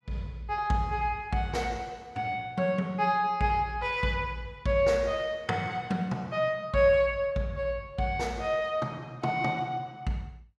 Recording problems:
none

